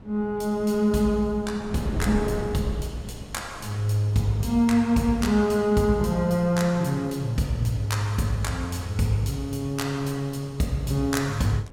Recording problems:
wind on the microphone; below 310 Hz, SNR 15 dB

